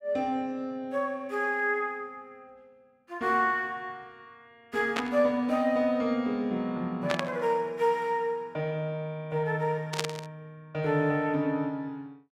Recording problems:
burst of static; at 5 s, at 7 s and at 10 s; peak +4 dB vs average level

